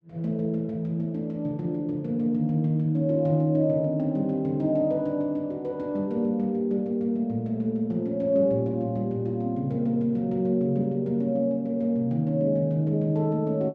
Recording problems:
none

